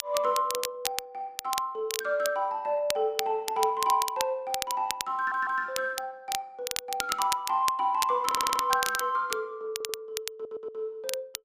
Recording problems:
crackle; vinyl, SNR 6 dB
stutter; 4 times, first at 5 s

